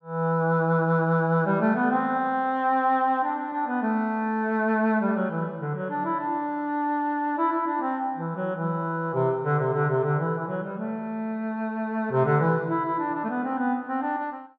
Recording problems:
none

